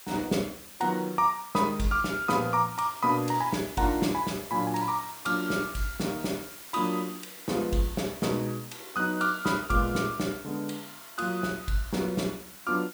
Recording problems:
background hiss; slope +1 dB per octave, SNR 14 dB

